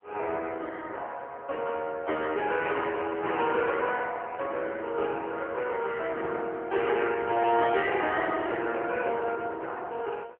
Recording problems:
telephone audio; 320 Hz to 3.3 kHz, AMR-NB

